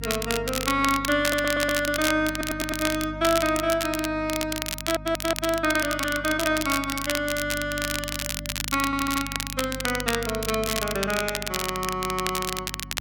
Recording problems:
electrical hum; 50 Hz, harmonics up to 300 Hz, SNR 13 dB
crackle; vinyl, SNR 4 dB
audio stuttering; 4 times, first at 1 s

